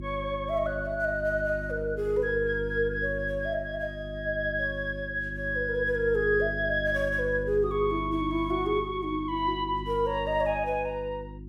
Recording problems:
hum; 50 Hz, harmonics up to 350 Hz, SNR 10 dB

